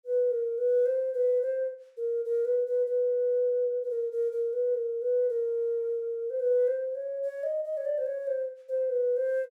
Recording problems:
none

